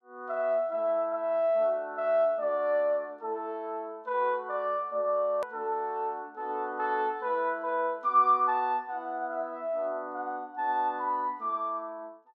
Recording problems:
hard cut with a click; at 5.5 s

